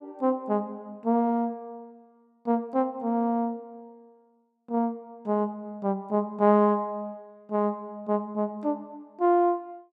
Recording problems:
none

